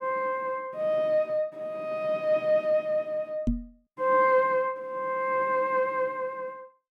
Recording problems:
microphone thump; at 3.5 s; peak +3 dB vs average level

